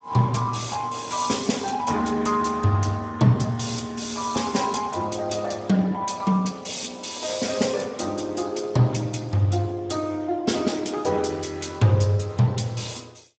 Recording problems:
lossy compression; Speex, log-spectral distance 7 dB, nothing above 7.6 kHz

